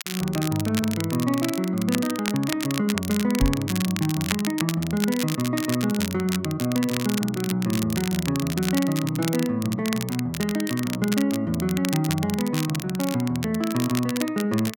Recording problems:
crackle; vinyl, SNR 8 dB
microphone bump; at 3.5 s; peak +4 dB vs average level

